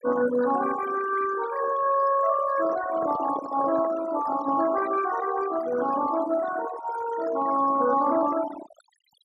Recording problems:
denoising artefacts; signal-to-artefact ratio 11 dB
microphone handling noise; from 2.5 to 5 s; peak -9 dB vs average level

